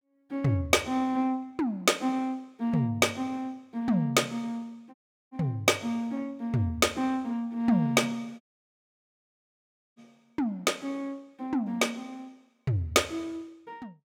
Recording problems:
dropout; at 5 s and at 8.5 s for 1.5 s

